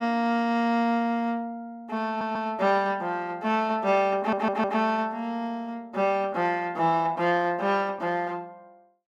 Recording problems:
stutter; at 2 s and at 4 s

